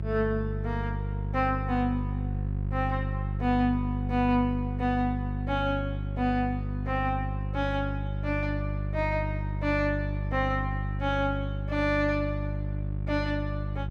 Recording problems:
electrical hum; 50 Hz, harmonics up to 400 Hz, SNR 2 dB

